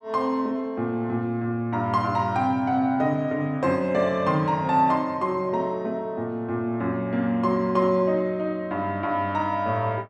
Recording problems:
none

